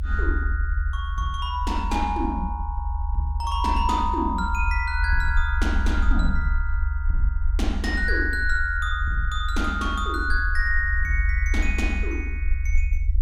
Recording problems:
rumble; below 70 Hz, SNR 0 dB

